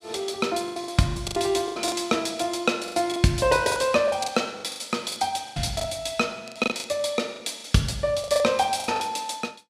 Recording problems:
packet loss; 14% of the sound replaced, filled with the last packet

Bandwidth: 15 kHz